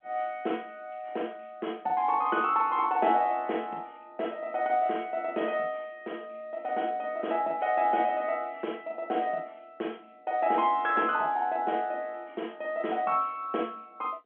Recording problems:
phone line; 220 Hz to 3.4 kHz, G.711

